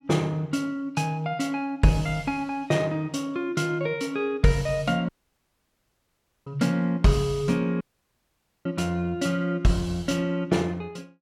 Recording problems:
dropout; at 5 s for 1.5 s and at 8 s for 1 s

